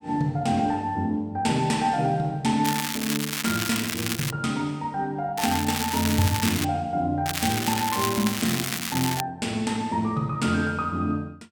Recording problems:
crackle; from 2.5 to 4.5 s, from 5.5 to 6.5 s and from 7.5 to 9 s; loose cable, SNR 3 dB

